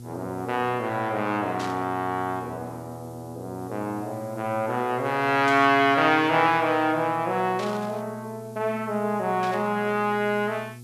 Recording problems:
electrical hum; 60 Hz, harmonics up to 480 Hz, SNR 18 dB
hiss; slope +6 dB per octave, SNR 29 dB
static burst; 4 times, first at 1.5 s; peak -9 dB vs average level

